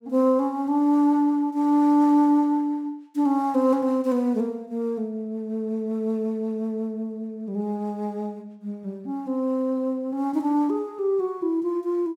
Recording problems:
none

